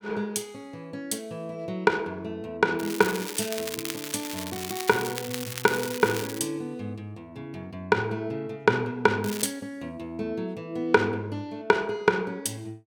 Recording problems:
crackling; from 3 to 6.5 s and at 9 s; loose cable, SNR 8 dB

